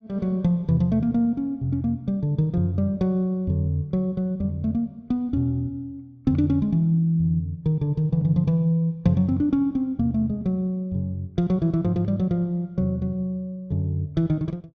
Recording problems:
none

